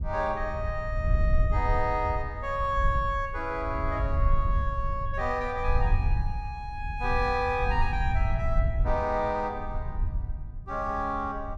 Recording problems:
low-frequency rumble; below 78 Hz, SNR 1 dB

